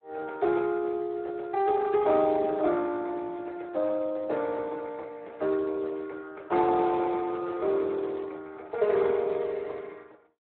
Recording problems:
telephone audio; 260 Hz to 2.1 kHz, Speex

